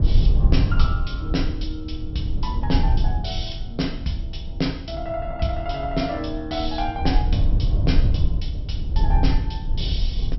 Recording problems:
low-pass filter; nothing above 5.6 kHz
low-frequency rumble; below 74 Hz, SNR -3 dB

